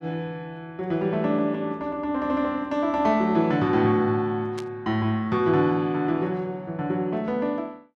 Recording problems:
static burst; at 4.5 s; peak -11 dB vs average level

